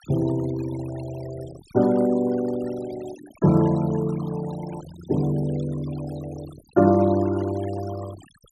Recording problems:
denoising artefacts; signal-to-artefact ratio 20 dB

